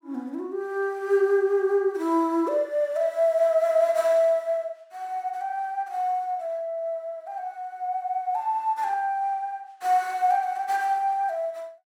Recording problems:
none

